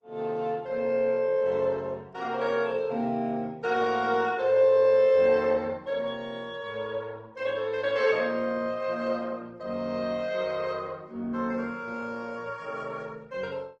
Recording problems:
lossy codec; Opus, log-spectral distance 2 dB

